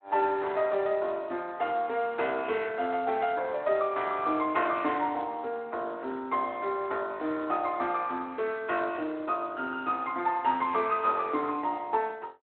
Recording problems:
phone line; 260 Hz to 3.6 kHz, Speex

